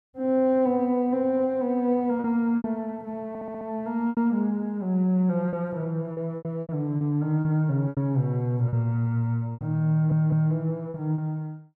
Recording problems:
packet loss; 7% of the sound replaced, filled with repeated pitch periods
stutter; at 3.5 s and at 10 s

